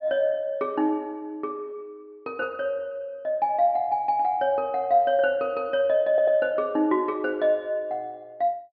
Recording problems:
treble missing; nothing above 5.5 kHz
stutter; at 6 s

